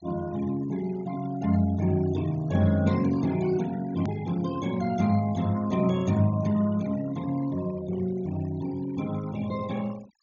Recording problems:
low-pass filter; nothing above 7 kHz
noise reduction artefacts; signal-to-artefact ratio 20 dB
click at an edit; at 4 s

